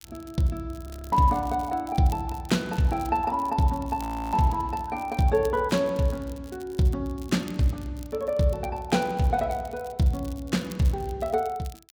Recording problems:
crackle; vinyl, SNR 24 dB
frozen audio; at 1 s and at 4 s

